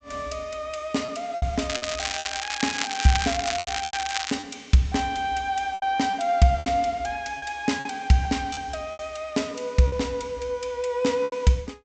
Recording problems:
treble cut off; nothing above 8 kHz
lost packets; 8% of the sound replaced, filled with repeated pitch periods
crackling; from 1.5 to 4.5 s; loose cable, SNR 4 dB

